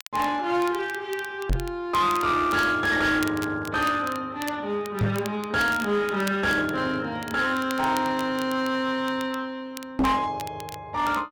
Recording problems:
distortion; hard clipping, uneven, signal-to-distortion ratio 10 dB
crackle; vinyl, SNR 18 dB
knock on the microphone; at 1.5 s, at 5 s and at 10 s; peak +5 dB vs average level

